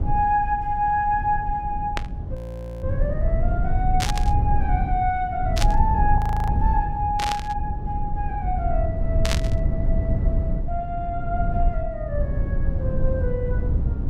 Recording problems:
low-frequency rumble; below 94 Hz, SNR 0 dB
burst of static; 5 times, first at 2 s; peak +5 dB vs average level
frozen audio; at 2.5 s and at 6 s

